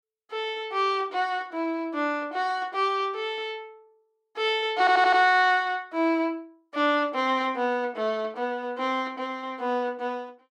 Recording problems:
audio stuttering; at 5 s

